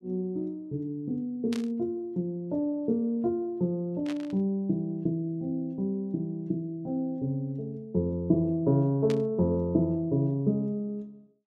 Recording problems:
burst of static; at 1.5 s, at 4 s and at 9 s; peak -6 dB vs average level

